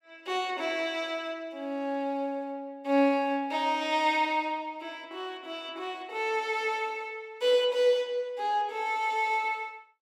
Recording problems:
none

